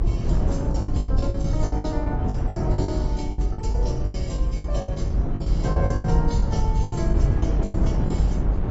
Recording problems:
lossy codec; AAC, then AAC, log-spectral distance 2 dB, nothing above 7.6 kHz
rumble; below 74 Hz, strongest tone 48 Hz, SNR -5 dB
wind noise; below 200 Hz, SNR -2 dB
packet loss; 16% of the sound replaced, filled with the last packet

